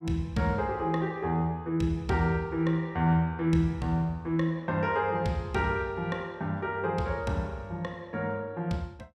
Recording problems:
none

